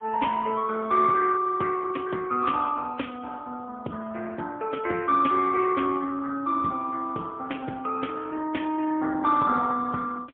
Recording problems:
phone line; 240 Hz to 3.3 kHz, AMR-NB, then MP3

